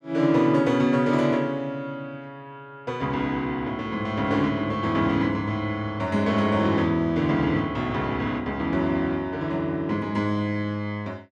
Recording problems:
none

